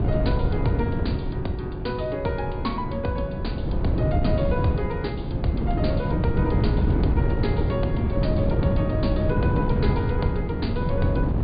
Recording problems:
treble cut off; nothing above 4.7 kHz
wind on the microphone; below 200 Hz, SNR -3 dB

